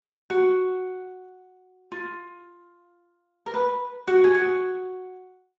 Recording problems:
lossy compression; Speex, log-spectral distance 2 dB

